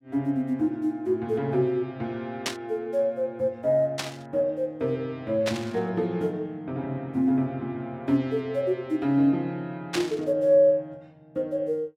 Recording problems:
static burst; 4 times, first at 2.5 s; peak +3 dB vs average level

